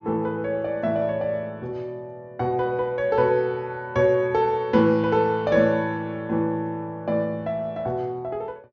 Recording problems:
treble missing; nothing above 6.8 kHz

